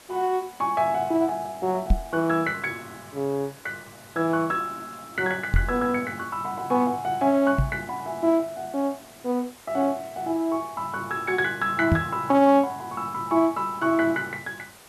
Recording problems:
background hiss; slope -2 dB per octave, SNR 22 dB
microphone bump; 4 times, first at 2 s; peak +7 dB vs average level

